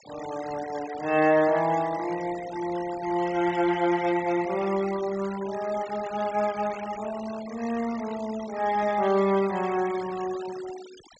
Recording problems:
treble missing; nothing above 8 kHz
denoising artefacts; signal-to-artefact ratio 16 dB

